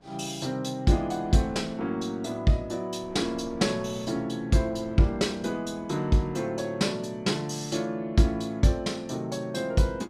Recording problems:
wind on the microphone; below 680 Hz, SNR 23 dB

